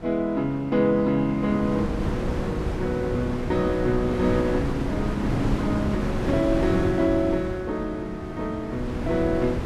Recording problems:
wind noise; below 380 Hz, SNR 4 dB

